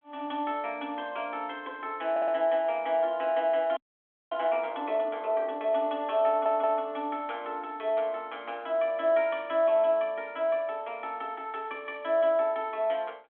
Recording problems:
telephone audio; 240 Hz to 3.4 kHz, G.726
stutter; at 2 s and at 6.5 s
frozen audio; at 4 s for 0.5 s

